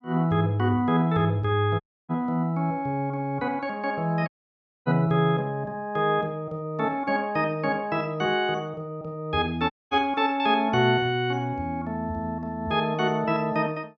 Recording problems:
dropout; at 2 s, at 4.5 s for 0.5 s and at 9.5 s

